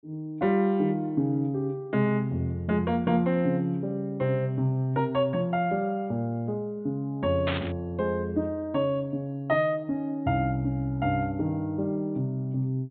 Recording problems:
treble cut off; nothing above 4 kHz
static burst; at 7.5 s; peak 0 dB vs average level

